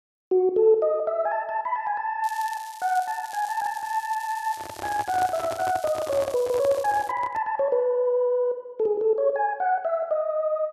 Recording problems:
crackle; from 2 to 7 s; loose cable, SNR 19 dB
handling noise; from 4.5 to 7.5 s; peak -5 dB vs average level

